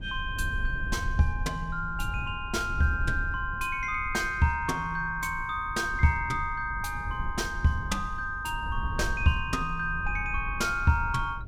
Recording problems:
low-frequency rumble; below 82 Hz, SNR 9 dB

